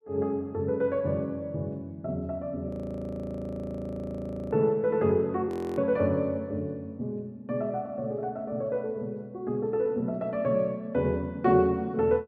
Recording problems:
audio freezing; at 2.5 s for 2 s and at 5.5 s

